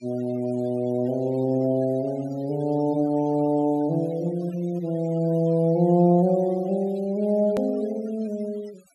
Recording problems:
noise reduction artefacts; signal-to-artefact ratio 26 dB
edit click; at 7.5 s

